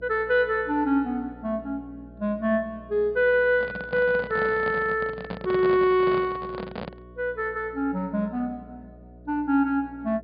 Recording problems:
treble cut off; nothing above 5 kHz
hum; 60 Hz, harmonics up to 660 Hz, SNR 23 dB
handling noise; from 3.5 to 7 s; peak -4 dB vs average level

